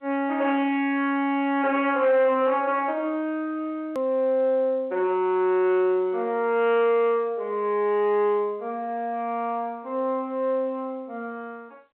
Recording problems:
telephone audio; 280 Hz to 3.9 kHz, G.711
distortion; soft clipping, signal-to-distortion ratio 12 dB
click at an edit; at 4 s

